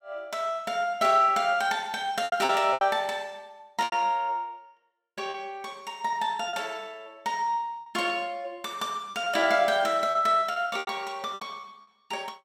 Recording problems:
packet loss; 7% of the sound replaced, filled with repeated pitch periods

